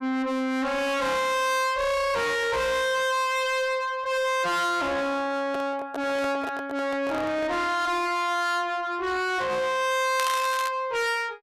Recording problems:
distortion; soft clipping, signal-to-distortion ratio 6 dB
handling noise; from 5.5 to 7.5 s; peak -3 dB vs average level
crackling; at 10 s; loose cable, SNR 10 dB

